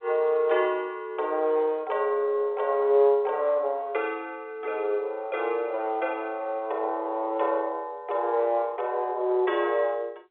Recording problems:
phone line; 340 Hz to 3.6 kHz, G.711

